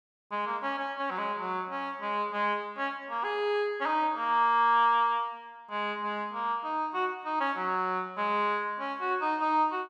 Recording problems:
none

